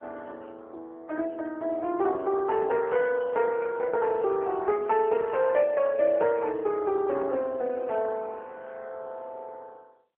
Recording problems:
phone line; 300 Hz to 2.6 kHz, AMR-NB

